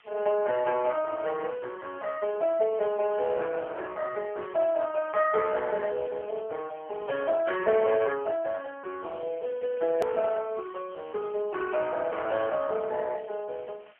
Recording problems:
telephone audio; 340 Hz to 3.1 kHz, AMR-NB
background hiss; SNR 27 dB
hard cut with a click; at 10 s

